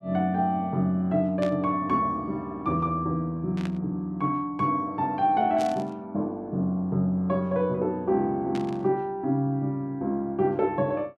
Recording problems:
static burst; 4 times, first at 1.5 s; peak -9 dB vs average level

